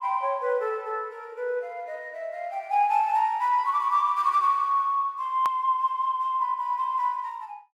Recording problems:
hard cut with a click; at 5.5 s

